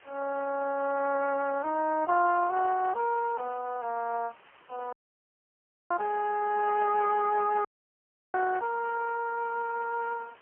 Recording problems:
telephone audio; 300 Hz to 2.8 kHz, AMR-NB, then MP3
background hiss; SNR 27 dB
audio cutting out; at 5 s for 1 s and at 7.5 s for 0.5 s

